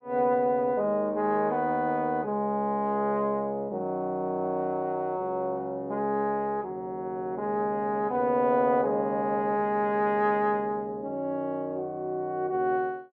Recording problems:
none

